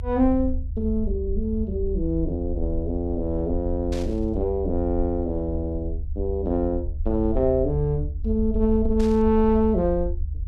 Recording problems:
rumble; below 76 Hz, SNR 6 dB
static burst; at 4 s and at 9 s; peak -11 dB vs average level

